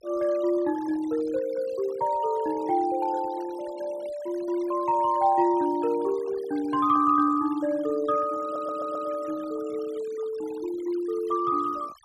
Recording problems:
noise reduction artefacts; signal-to-artefact ratio 21 dB
stutter; at 8.5 s

